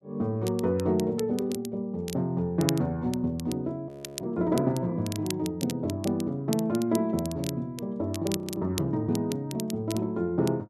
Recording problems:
crackling; vinyl, SNR 13 dB
audio freezing; at 4 s and at 8.5 s

